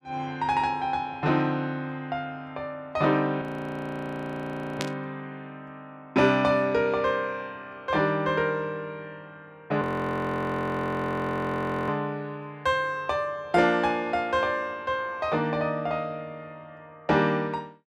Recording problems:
audio freezing; at 3.5 s for 1.5 s and at 10 s for 2 s
static burst; at 5 s; peak 0 dB vs average level

